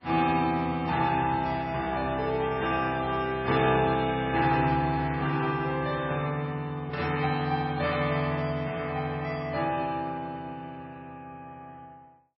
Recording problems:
lossy codec; AAC, then MP3, log-spectral distance 2 dB, nothing above 4.8 kHz

